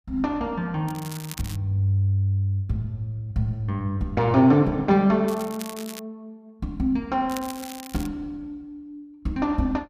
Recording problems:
crackling; at 1 s, at 5.5 s and at 7.5 s; loose cable, SNR 16 dB

